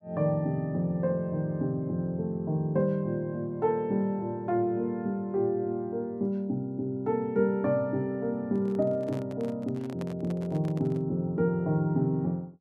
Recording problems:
handling noise; from 8.5 to 11 s; peak -7 dB vs average level

